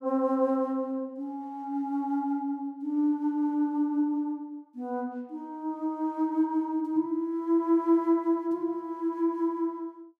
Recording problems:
none

